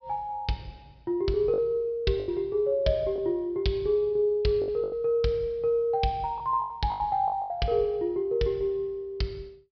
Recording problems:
treble missing; nothing above 5.5 kHz
lost packets; 6% of the sound replaced, filled with the last packet

